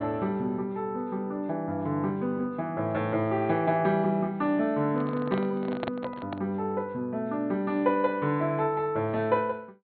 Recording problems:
treble cut off; nothing above 4.3 kHz
microphone handling noise; from 5 to 6.5 s; peak -1 dB vs average level

